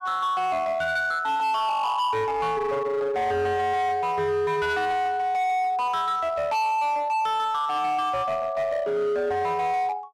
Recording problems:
distortion; hard clipping, signal-to-distortion ratio 10 dB

